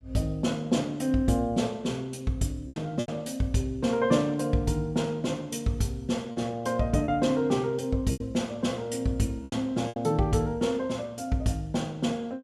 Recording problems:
packet loss; 4% of the sound replaced, filled with repeated pitch periods

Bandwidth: 14.5 kHz